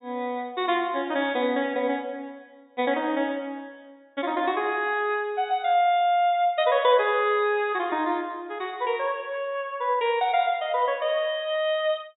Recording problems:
low-pass filter; nothing above 4 kHz

